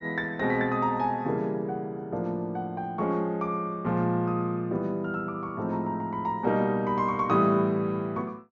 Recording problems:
treble cut off; nothing above 7 kHz

